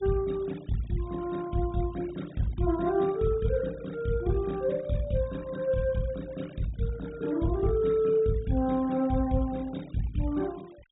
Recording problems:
treble missing; nothing above 4 kHz
denoising artefacts; signal-to-artefact ratio 23 dB

